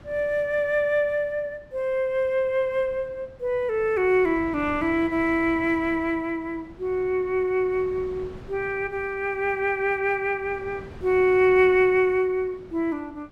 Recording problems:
wind noise; below 440 Hz, SNR 21 dB

